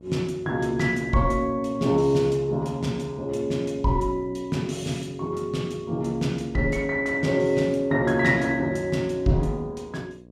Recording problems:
hum; 60 Hz, harmonics up to 720 Hz, SNR 24 dB

